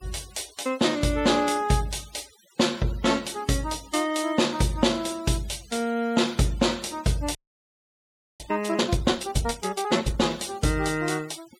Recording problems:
denoising artefacts; signal-to-artefact ratio 20 dB
frozen audio; at 7.5 s for 1 s

